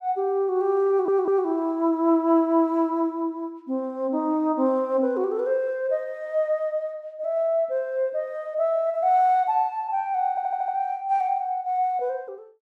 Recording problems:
stutter; at 1 s and at 10 s

